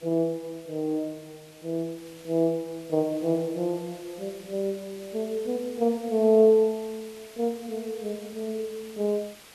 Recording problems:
hiss; slope -1 dB per octave, SNR 21 dB

